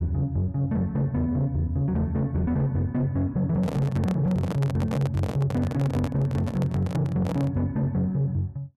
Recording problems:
distortion; soft clipping, signal-to-distortion ratio 11 dB
handling noise; from 3.5 to 7.5 s; peak 0 dB vs average level

